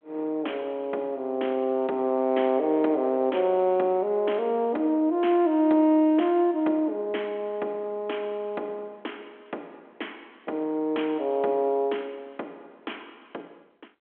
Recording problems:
phone line; 260 Hz to 3.3 kHz, G.726

